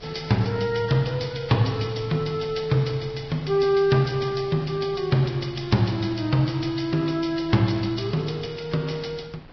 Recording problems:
lossy compression; Vorbis, log-spectral distance 6 dB, nothing above 5.7 kHz
wind noise; below 680 Hz, SNR 23 dB

